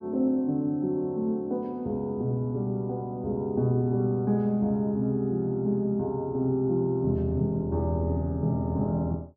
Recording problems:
none

